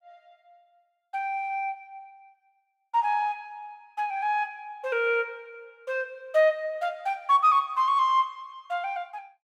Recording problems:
none

